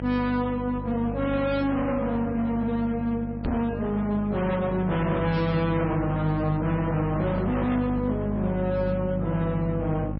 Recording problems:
lossy compression; MP3, log-spectral distance 2 dB, nothing above 4.8 kHz
distorted audio; hard clipping, uneven, signal-to-distortion ratio 6 dB
hum; 50 Hz, harmonics up to 850 Hz, SNR 7 dB
microphone thump; at 3.5 s; peak +2 dB vs average level

